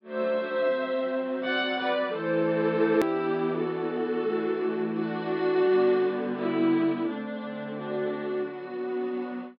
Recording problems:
low-pass filter; nothing above 5.5 kHz
edit click; at 3 s

